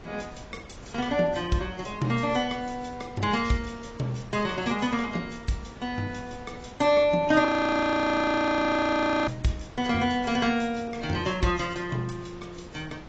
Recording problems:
lossy codec; AAC, log-spectral distance 4 dB, nothing above 7.6 kHz
wind noise; below 810 Hz, SNR 19 dB
audio freezing; at 7.5 s for 2 s

